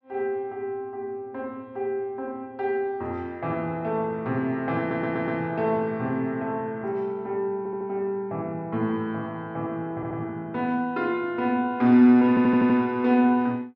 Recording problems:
audio stuttering; 4 times, first at 5 s

